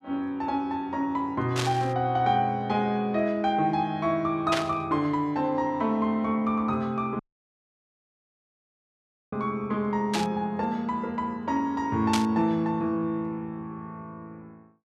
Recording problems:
burst of static; 4 times, first at 1.5 s; peak +2 dB vs average level
dropout; at 7 s for 2 s

